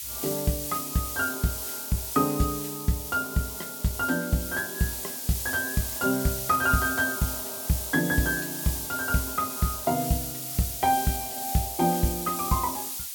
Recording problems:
background hiss; slope +5 dB per octave, SNR 4 dB

